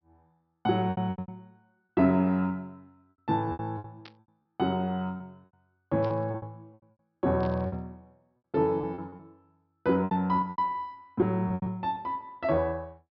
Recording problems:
treble missing; nothing above 5.5 kHz
packet loss; 12% of the sound replaced, filled with repeated pitch periods
burst of static; at 4 s, at 6 s and at 7.5 s; peak -14 dB vs average level

